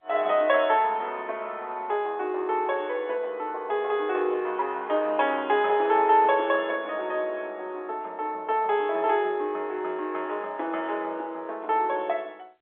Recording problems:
telephone audio; 300 Hz to 3.8 kHz, G.711

